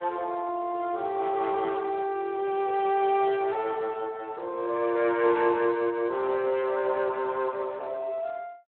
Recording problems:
phone line; 300 Hz to 3.3 kHz, Speex

